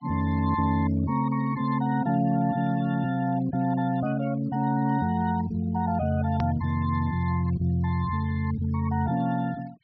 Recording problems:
treble cut off; nothing above 5.7 kHz
noise reduction artefacts; signal-to-artefact ratio 24 dB
click at an edit; at 6.5 s

